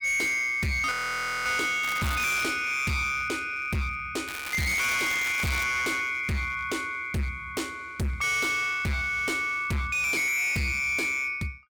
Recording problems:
distortion; hard clipping, signal-to-distortion ratio 7 dB
audio freezing; at 1 s for 0.5 s
crackle; at 2 s and from 4.5 to 5.5 s; loose cable, SNR 10 dB

